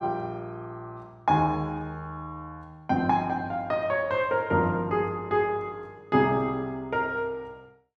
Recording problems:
none

